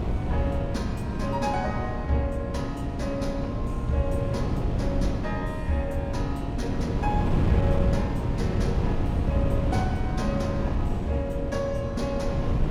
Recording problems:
hum; 60 Hz, harmonics up to 1.1 kHz, SNR 8 dB
wind on the microphone; below 190 Hz, SNR -1 dB

